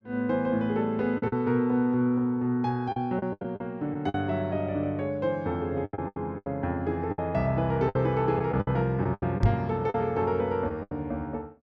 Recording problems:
packet loss; 9% of the sound replaced, filled with the last packet
microphone thump; at 9.5 s; peak +8 dB vs average level

